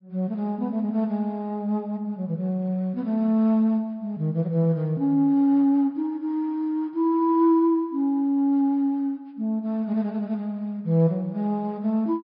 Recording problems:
low-pass filter; nothing above 5.5 kHz

